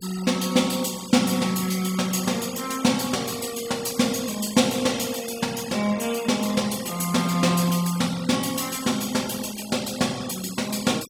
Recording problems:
denoising artefacts; signal-to-artefact ratio 16 dB

